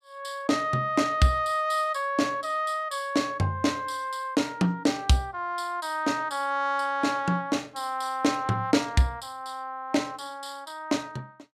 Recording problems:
none

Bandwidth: 14.5 kHz